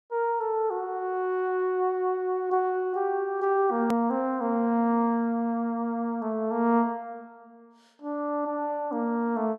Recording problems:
click at an edit; at 4 s

